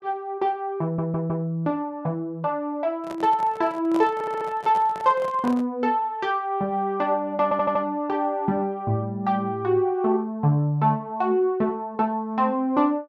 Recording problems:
stutter; at 1 s, at 4 s and at 7.5 s
microphone handling noise; from 3 to 5.5 s; peak -5 dB vs average level

